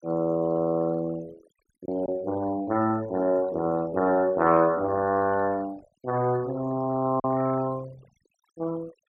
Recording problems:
noise reduction artefacts; signal-to-artefact ratio 21 dB
lost packets; 1% of the sound replaced, filled with silence

